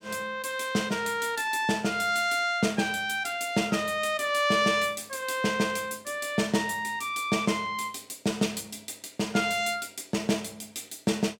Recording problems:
none

